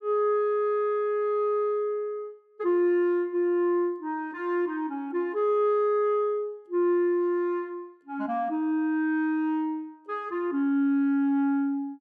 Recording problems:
none

